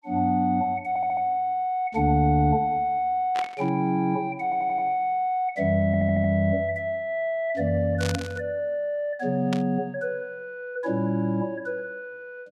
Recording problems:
stutter; at 1 s, at 4.5 s and at 6 s
burst of static; at 3.5 s, at 8 s and at 9.5 s; peak -3 dB vs average level

